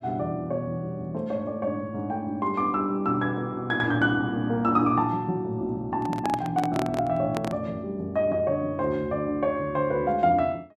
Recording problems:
microphone handling noise; from 6 to 7.5 s; peak -1 dB vs average level

